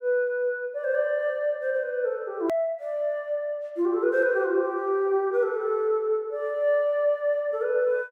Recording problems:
edit click; at 2.5 s

